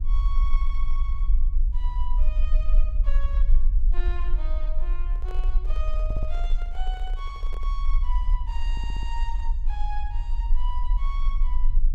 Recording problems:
rumble; below 38 Hz, strongest tone 22 Hz, SNR -13 dB
handling noise; from 5 to 7.5 s; peak 0 dB vs average level
audio stuttering; at 6 s and at 8.5 s

